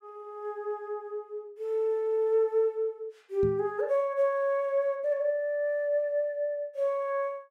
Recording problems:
knock on the microphone; at 3.5 s; peak -2 dB vs average level

